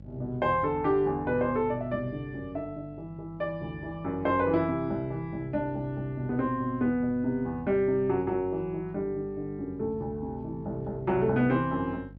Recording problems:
hum; 50 Hz, harmonics up to 600 Hz, SNR 19 dB

